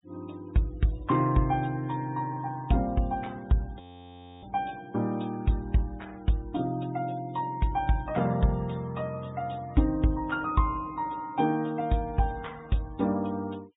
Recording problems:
treble missing; nothing above 4 kHz
denoising artefacts; signal-to-artefact ratio 25 dB
audio freezing; at 4 s for 0.5 s

